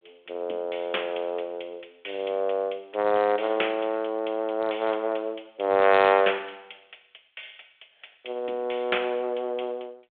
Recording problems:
phone line; 340 Hz to 3.5 kHz, G.726

